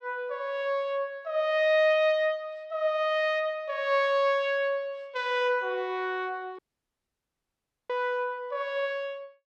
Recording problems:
dropout; at 6.5 s for 1.5 s

